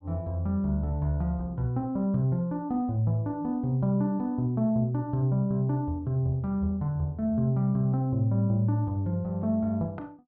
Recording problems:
treble missing; nothing above 5.5 kHz

